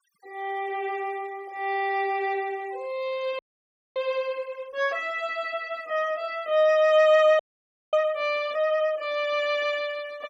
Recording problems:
denoising artefacts; signal-to-artefact ratio 27 dB
audio freezing; at 3.5 s for 0.5 s and at 7.5 s for 0.5 s

